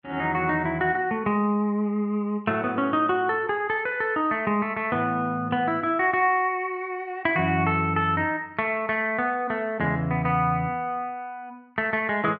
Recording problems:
none

